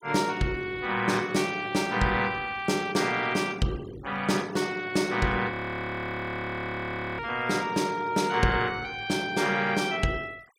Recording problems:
noise reduction artefacts; signal-to-artefact ratio 23 dB
frozen audio; at 5.5 s for 1.5 s

